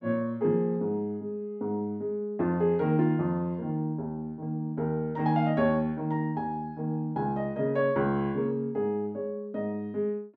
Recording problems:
none

